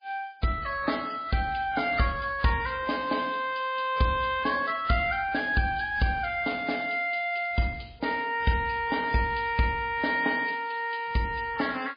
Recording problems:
codec artefacts; MP3, log-spectral distance 5 dB

